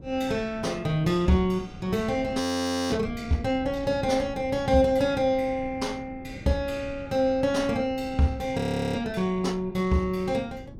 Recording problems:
wind noise; below 240 Hz, SNR 17 dB
audio freezing; at 2.5 s for 0.5 s and at 8.5 s

